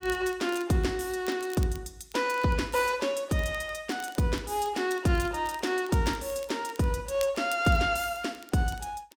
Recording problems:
crackle; vinyl, SNR 21 dB

